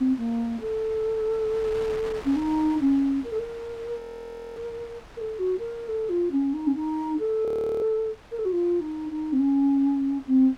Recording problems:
wind on the microphone; below 1.9 kHz, SNR 20 dB
audio freezing; at 4 s for 0.5 s and at 7.5 s

